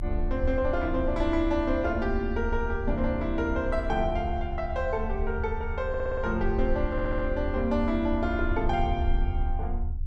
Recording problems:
rumble; below 76 Hz, strongest tone 28 Hz, SNR 4 dB
audio stuttering; at 6 s and at 7 s

